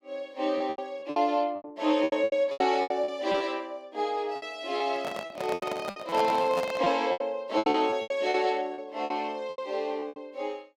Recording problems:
lost packets; 16% of the sound replaced, filled with repeated pitch periods
handling noise; from 5 to 7 s; peak 0 dB vs average level

